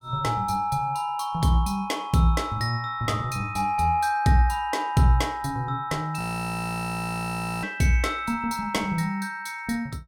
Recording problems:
frozen audio; at 6 s for 1.5 s

